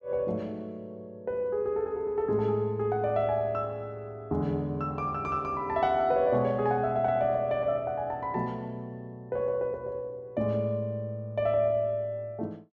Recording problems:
none

